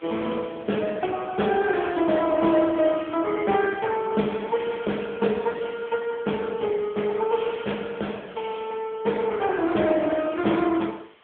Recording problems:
telephone audio; 190 Hz to 3.4 kHz, AMR-NB
hiss; SNR 27 dB

